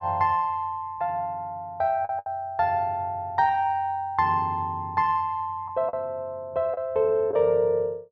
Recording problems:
lost packets; 3% of the sound replaced, filled with the last packet

